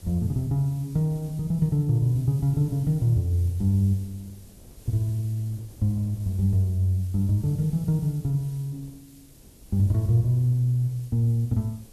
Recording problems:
hiss; SNR 27 dB
wind noise; below 240 Hz, SNR 27 dB

